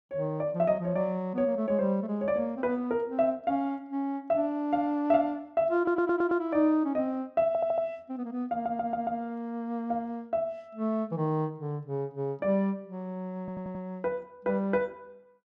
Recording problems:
audio stuttering; 4 times, first at 6 s

